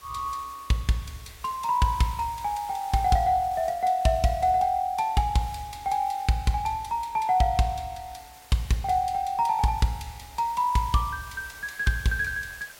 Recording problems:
background hiss; SNR 22 dB

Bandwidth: 16.5 kHz